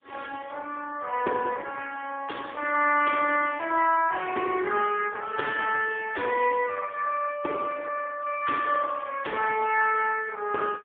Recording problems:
phone line; 320 Hz to 3 kHz, AMR-NB, then MP3

